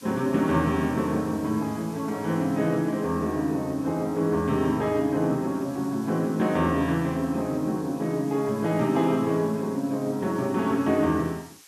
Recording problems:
background hiss; slope +3 dB per octave, SNR 23 dB

